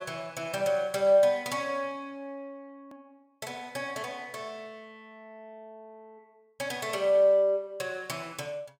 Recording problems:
edit click; at 3 s

